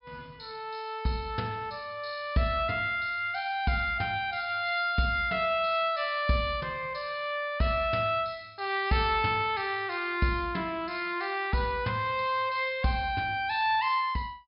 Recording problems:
treble cut off; nothing above 5.5 kHz

